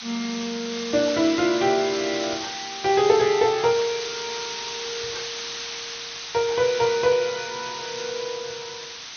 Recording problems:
codec artefacts; MP2, log-spectral distance 21 dB, nothing above 6 kHz
hiss; SNR 8 dB

